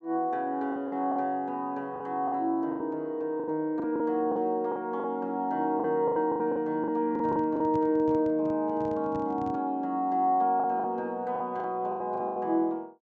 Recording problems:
low-pass filter; nothing above 8 kHz
packet loss; 10% of the sound replaced, filled with the last packet
microphone handling noise; from 7 to 9.5 s; peak -8 dB vs average level

